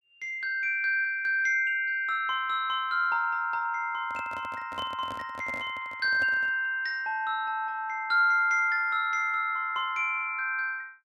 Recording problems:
microphone handling noise; from 4 to 6.5 s; peak -10 dB vs average level

